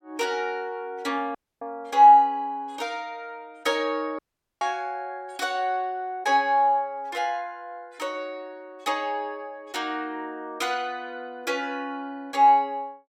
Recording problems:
audio cutting out; at 1.5 s and at 4 s

